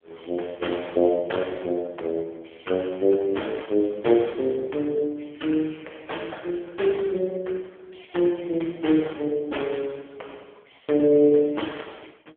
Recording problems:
phone line; 260 Hz to 3.5 kHz, AMR-NB

